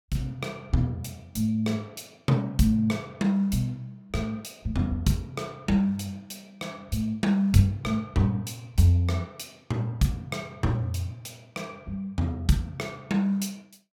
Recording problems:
none

